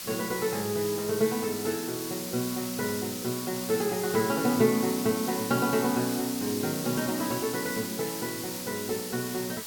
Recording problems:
hiss; slope +1 dB per octave, SNR 6 dB

